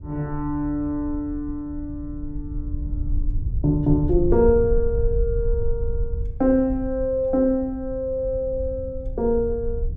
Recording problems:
rumble; below 70 Hz, SNR 7 dB

